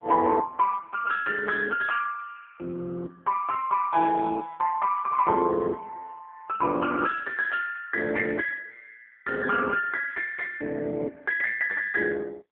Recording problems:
phone line; 240 Hz to 2.8 kHz, AMR-NB

